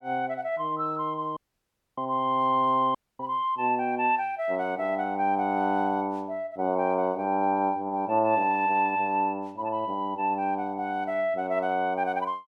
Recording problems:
audio cutting out; at 1.5 s for 0.5 s and at 3 s

